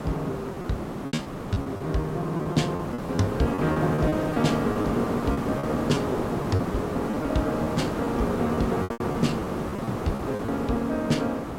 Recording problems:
hiss; SNR 2 dB
lost packets; 12% of the sound replaced, filled with repeated pitch periods

